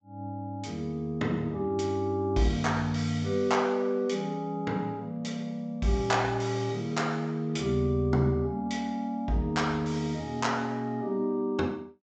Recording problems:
low-pass filter; nothing above 8 kHz

